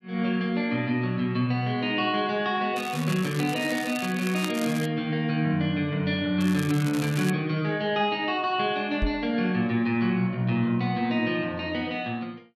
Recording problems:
crackle; from 3 to 5 s and at 6.5 s; loose cable, SNR 13 dB
knock on the microphone; at 9 s; peak +1 dB vs average level

